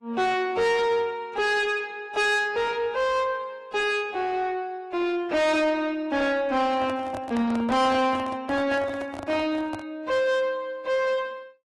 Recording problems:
lossy codec; AAC, log-spectral distance 2 dB
distortion; soft clipping, signal-to-distortion ratio 7 dB
microphone handling noise; from 6.5 to 10 s; peak -5 dB vs average level

